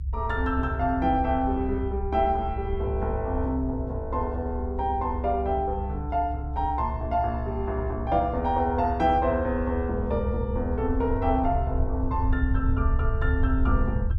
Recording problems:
low-frequency rumble; below 76 Hz, SNR 4 dB

